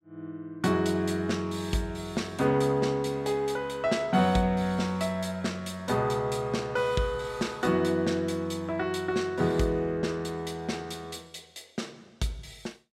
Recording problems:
none

